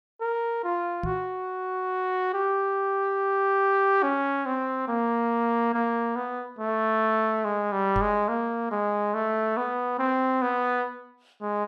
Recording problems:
knock on the microphone; at 1 s and at 8 s; peak -1 dB vs average level

